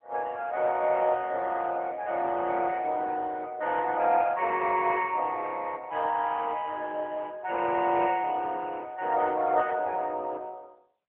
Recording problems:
telephone audio; 320 Hz to 3.3 kHz, AMR-NB

